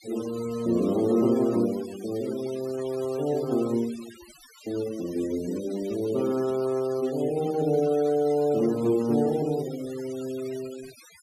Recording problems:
noise reduction artefacts; signal-to-artefact ratio 19 dB

